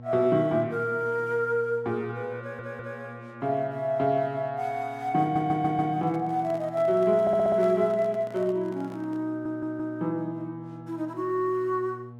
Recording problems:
electrical hum; 60 Hz, harmonics up to 1.1 kHz, SNR 19 dB
audio stuttering; 4 times, first at 2.5 s
handling noise; from 6 to 9.5 s; peak -11 dB vs average level

